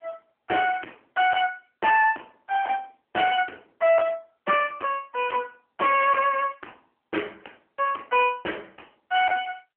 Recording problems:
phone line; 260 Hz to 3.1 kHz, AMR-NB
distortion; hard clipping, uneven, signal-to-distortion ratio 10 dB

